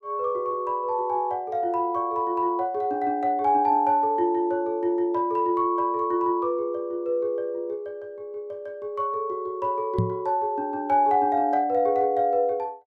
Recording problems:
microphone thump; at 10 s; peak +4 dB vs average level

